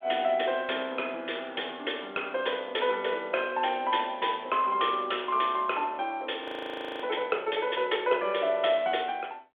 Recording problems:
telephone audio; 300 Hz to 3.4 kHz, G.726
audio freezing; at 6.5 s for 0.5 s

